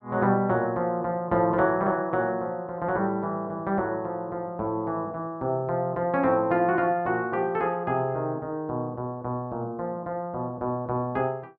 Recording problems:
none

